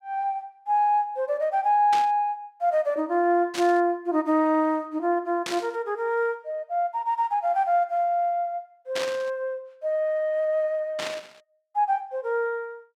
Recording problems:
burst of static; 5 times, first at 2 s; peak -2 dB vs average level

